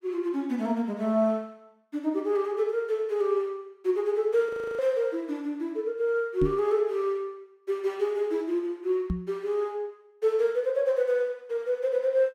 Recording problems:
frozen audio; at 4.5 s
microphone thump; at 6.5 s and at 9 s; peak +3 dB vs average level

